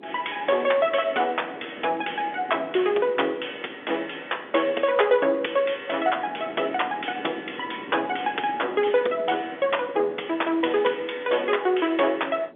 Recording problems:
telephone audio; 280 Hz to 3.6 kHz, G.711
wind on the microphone; below 460 Hz, SNR 19 dB

